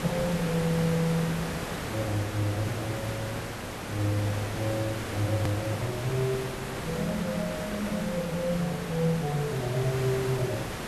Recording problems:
hiss; slope -5 dB per octave, SNR 4 dB
edit click; at 5.5 s

